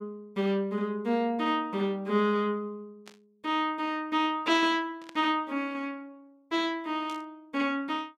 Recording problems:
static burst; at 3 s, at 5 s and at 7 s; peak -12 dB vs average level

